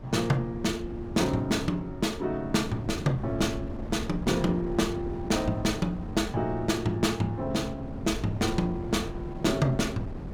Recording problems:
wind noise; below 250 Hz, SNR 10 dB

